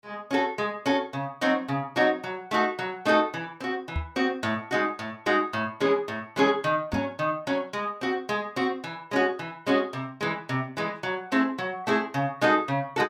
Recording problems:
microphone bump; at 4 s and at 7 s; peak +1 dB vs average level

